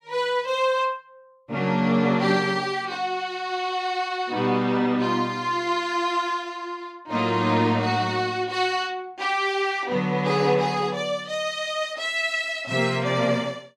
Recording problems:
none

